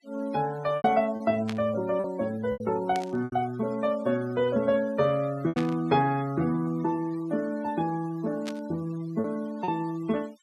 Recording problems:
noise reduction artefacts; signal-to-artefact ratio 21 dB
lost packets; 5% of the sound replaced, filled with repeated pitch periods
static burst; 4 times, first at 1.5 s; peak -5 dB vs average level

